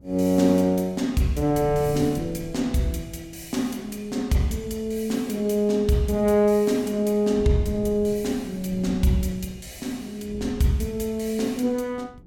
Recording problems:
wind noise; below 210 Hz, SNR 18 dB

